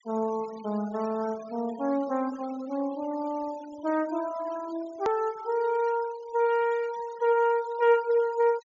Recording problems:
low-pass filter; nothing above 7.2 kHz
noise reduction artefacts; signal-to-artefact ratio 20 dB
hard cut with a click; at 5 s

